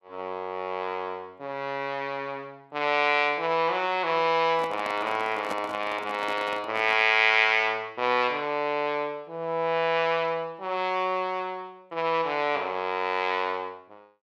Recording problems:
handling noise; from 4.5 to 7 s; peak -4 dB vs average level

